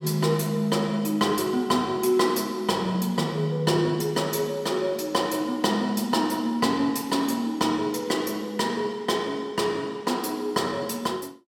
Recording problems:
none

